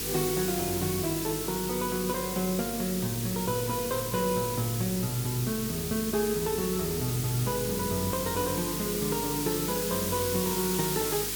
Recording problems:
electrical hum; 50 Hz, harmonics up to 450 Hz, SNR 11 dB
hiss; slope +2 dB per octave, SNR 2 dB

